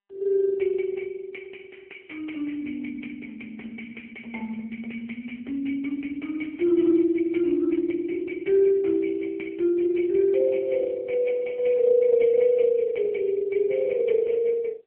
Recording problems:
phone line; 240 Hz to 3.1 kHz, AMR-NB

